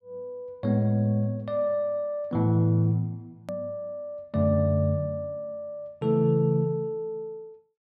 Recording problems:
click at an edit; at 3.5 s

